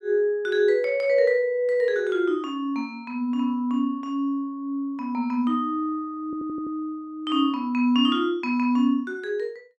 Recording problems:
stutter; at 6.5 s

